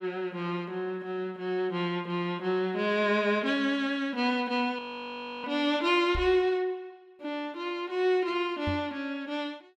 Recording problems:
frozen audio; at 5 s for 0.5 s
knock on the microphone; at 6 s and at 8.5 s; peak -1 dB vs average level

